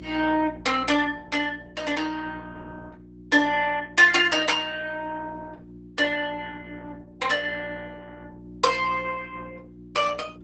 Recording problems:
lossy compression; Opus, log-spectral distance 4 dB, nothing above 8 kHz
hum; 60 Hz, harmonics up to 360 Hz, SNR 20 dB

